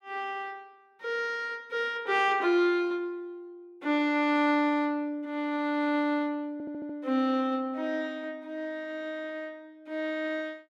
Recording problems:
stutter; at 6.5 s

